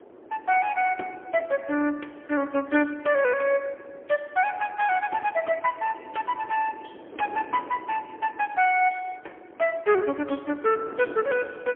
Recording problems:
telephone audio; 260 Hz to 3.1 kHz, AMR-NB, then MP3
wind noise; below 590 Hz, SNR 19 dB

